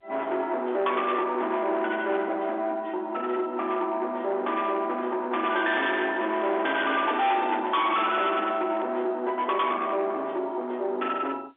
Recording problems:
phone line; 280 Hz to 3.6 kHz, G.711
distortion; soft clipping, signal-to-distortion ratio 8 dB
handling noise; from 5.5 to 9 s; peak -8 dB vs average level

